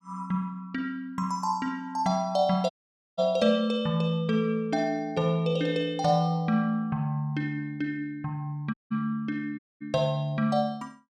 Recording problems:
dropout; at 2.5 s, at 8.5 s and at 9.5 s

